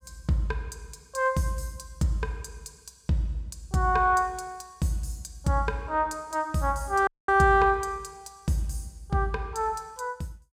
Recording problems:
dropout; at 7 s

